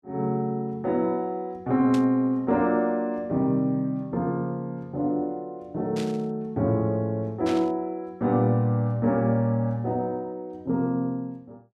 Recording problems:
static burst; at 2 s, at 6 s and at 7.5 s; peak -6 dB vs average level

